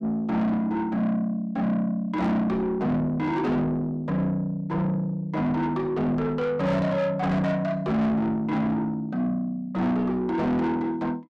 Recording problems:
distortion; soft clipping, signal-to-distortion ratio 7 dB

